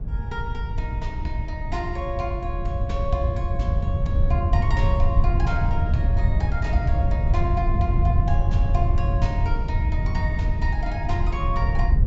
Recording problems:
low-pass filter; nothing above 8 kHz
wind on the microphone; below 94 Hz, SNR -6 dB

